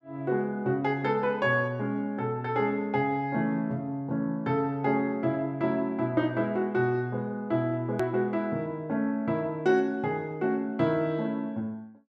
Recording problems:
click at an edit; at 8 s

